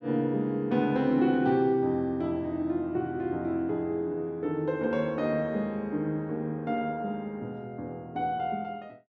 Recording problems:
none

